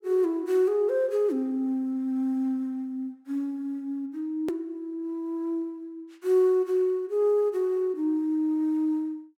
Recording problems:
click at an edit; at 4.5 s

